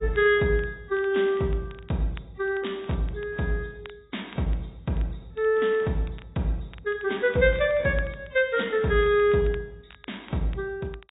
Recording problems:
treble cut off; nothing above 3.8 kHz
codec artefacts; AAC, log-spectral distance 2 dB
crackle; vinyl, SNR 26 dB

